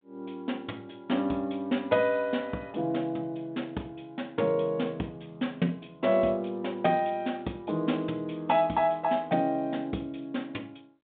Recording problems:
telephone audio; 150 Hz to 3.7 kHz, G.726

